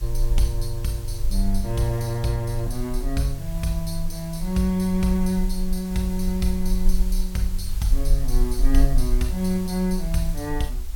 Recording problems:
hiss; slope -1 dB per octave, SNR 17 dB
low-frequency rumble; below 40 Hz, strongest tone 22 Hz, SNR 4 dB

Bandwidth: 17 kHz